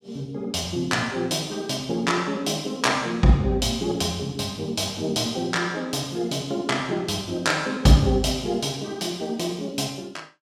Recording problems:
none

